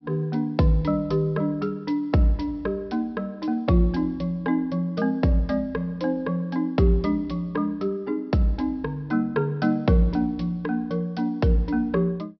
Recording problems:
treble cut off; nothing above 5.5 kHz

